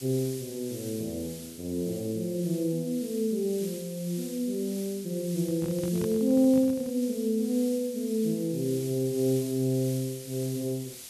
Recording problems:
background hiss; SNR 14 dB
microphone handling noise; from 5.5 to 7 s; peak -3 dB vs average level

